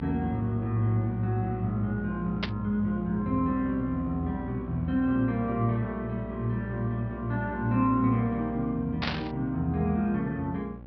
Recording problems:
treble missing; nothing above 5.5 kHz
hum; 60 Hz, harmonics up to 1.1 kHz, SNR 12 dB
static burst; at 2.5 s and at 9 s; peak +2 dB vs average level

